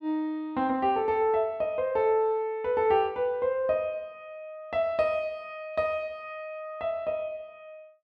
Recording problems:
none

